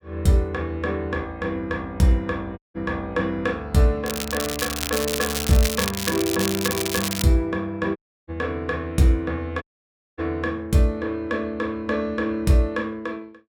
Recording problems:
audio cutting out; at 2.5 s, at 8 s and at 9.5 s for 0.5 s
crackling; from 4 to 7 s; loose cable, SNR 3 dB

